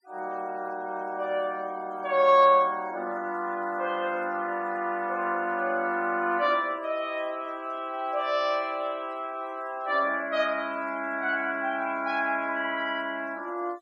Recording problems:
denoising artefacts; signal-to-artefact ratio 25 dB

